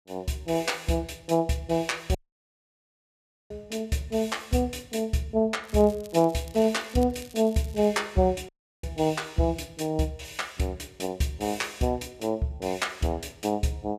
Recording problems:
audio cutting out; at 2 s for 1.5 s and at 8.5 s
crackle; from 5.5 to 8 s; loose cable, SNR 22 dB

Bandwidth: 14.5 kHz